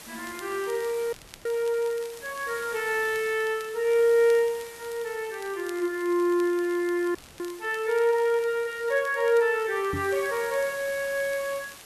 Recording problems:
background hiss; slope -1 dB per octave, SNR 18 dB
crackle; vinyl, SNR 24 dB
audio cutting out; at 1 s and at 7 s
microphone thump; at 10 s; peak -3 dB vs average level

